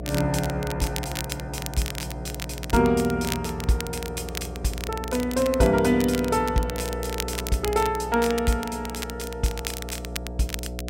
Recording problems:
electrical hum; 60 Hz, harmonics up to 720 Hz, SNR 10 dB
crackling; vinyl, SNR 10 dB

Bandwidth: 16 kHz